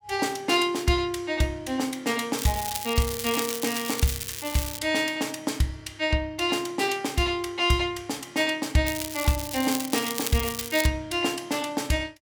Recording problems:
crackling; from 2.5 to 5 s and from 9 to 11 s; loose cable, SNR 6 dB

